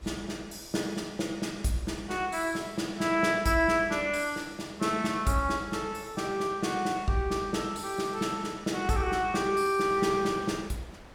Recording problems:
wind on the microphone; below 1.4 kHz, SNR 22 dB

